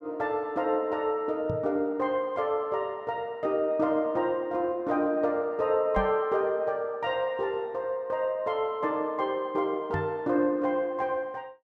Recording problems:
microphone thump; at 1.5 s, at 6 s and at 10 s; peak -1 dB vs average level

